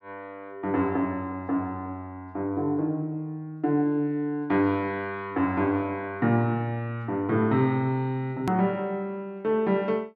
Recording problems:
edit click; at 8.5 s

